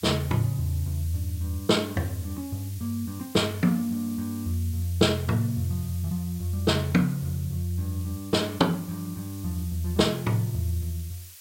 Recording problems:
background hiss; SNR 17 dB

